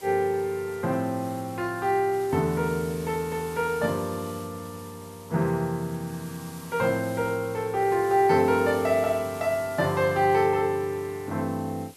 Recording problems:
background hiss; SNR 19 dB

